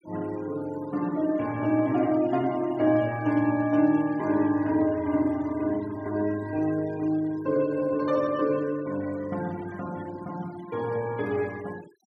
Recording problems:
denoising artefacts; signal-to-artefact ratio 21 dB

